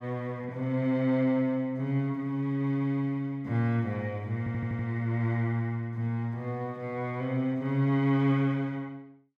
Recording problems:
audio stuttering; at 4.5 s

